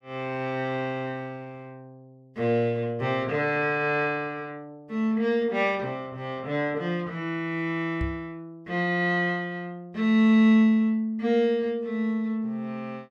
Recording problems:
microphone bump; at 8 s; peak -2 dB vs average level

